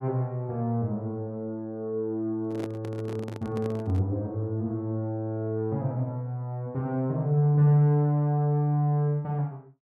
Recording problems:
microphone handling noise; from 2.5 to 4 s; peak -7 dB vs average level

